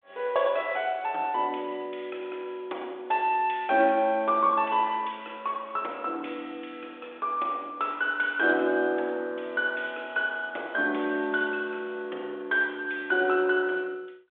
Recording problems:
phone line; 300 Hz to 3.6 kHz, G.726

